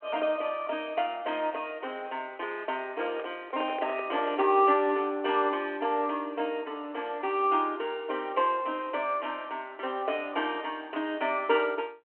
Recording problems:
telephone audio; 260 Hz to 3.4 kHz, G.726
handling noise; from 3 to 4.5 s; peak -5 dB vs average level

